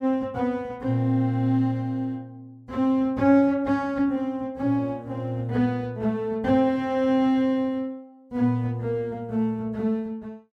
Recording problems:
none

